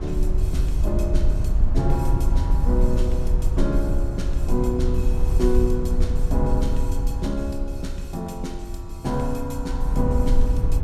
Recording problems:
rumble; below 62 Hz, SNR -3 dB

